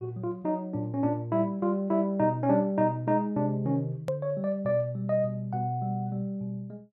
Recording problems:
hard cut with a click; at 4 s

